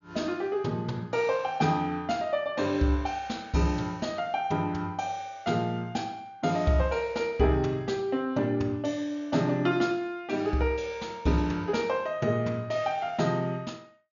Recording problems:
treble missing; nothing above 7 kHz

